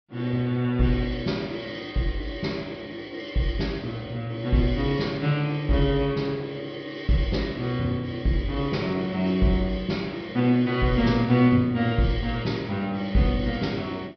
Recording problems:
treble missing; nothing above 5.5 kHz

